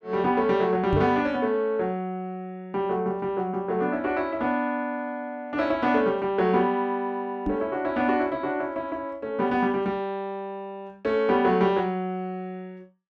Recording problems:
microphone thump; at 1 s and at 7.5 s; peak +3 dB vs average level

